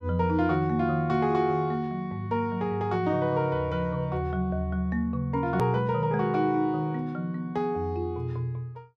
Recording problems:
click at an edit; at 5.5 s

